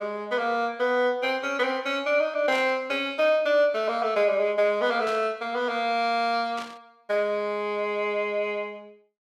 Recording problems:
burst of static; at 2.5 s, at 5 s and at 6.5 s; peak -9 dB vs average level

